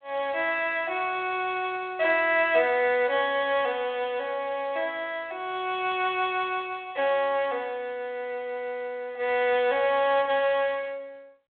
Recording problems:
phone line; 300 Hz to 3.6 kHz, G.726

